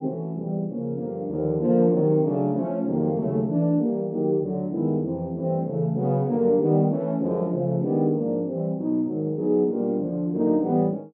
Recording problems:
none

